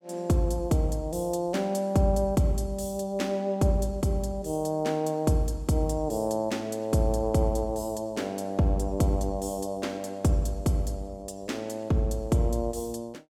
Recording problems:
none

